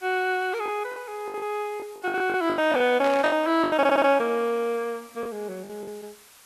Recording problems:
lossy codec; Vorbis, log-spectral distance 5 dB, nothing above 12.3 kHz
hiss; slope +1 dB per octave, SNR 26 dB
lost packets; 12% of the sound replaced, filled with the last packet
static burst; at 3 s; peak -7 dB vs average level
stutter; at 4 s

